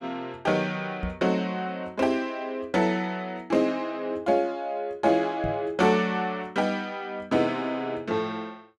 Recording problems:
microphone thump; at 1 s and at 5.5 s; peak -2 dB vs average level

